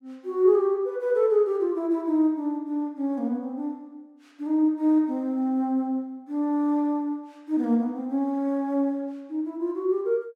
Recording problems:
none

